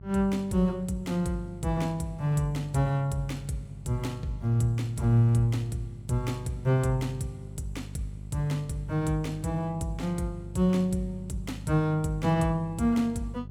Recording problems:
hum; 50 Hz, harmonics up to 400 Hz, SNR 14 dB

